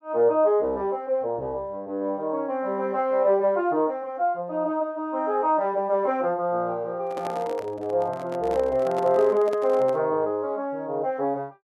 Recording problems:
handling noise; from 7 to 10 s; peak -6 dB vs average level

